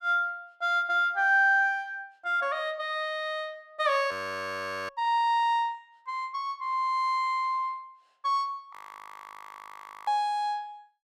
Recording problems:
audio freezing; at 4 s for 1 s and at 8.5 s for 1.5 s

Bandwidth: 14.5 kHz